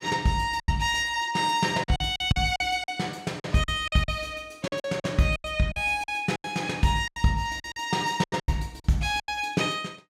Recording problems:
lost packets; 13% of the sound replaced, filled with silence

